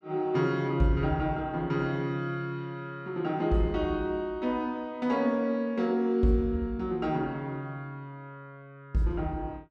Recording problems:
none

